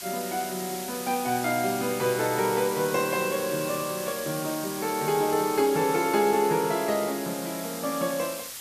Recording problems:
background hiss; slope +2 dB per octave, SNR 9 dB

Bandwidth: 14.5 kHz